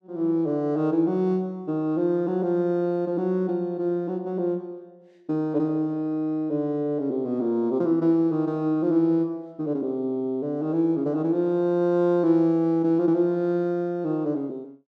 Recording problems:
none

